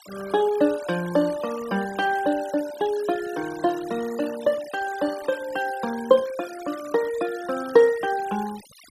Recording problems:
denoising artefacts; signal-to-artefact ratio 18 dB

